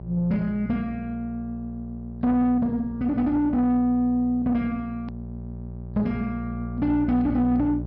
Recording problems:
treble missing; nothing above 5.5 kHz
distorted audio; soft clipping, signal-to-distortion ratio 10 dB
electrical hum; 60 Hz, harmonics up to 780 Hz, SNR 12 dB
click at an edit; at 5 s

